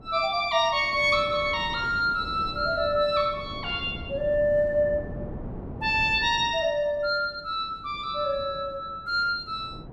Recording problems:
wind noise; below 350 Hz, SNR 15 dB

